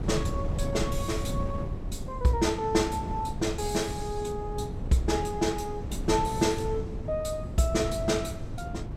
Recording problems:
wind noise; below 180 Hz, SNR 6 dB

